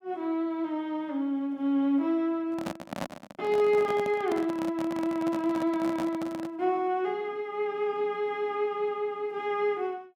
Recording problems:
microphone handling noise; from 2.5 to 6.5 s; peak -1 dB vs average level

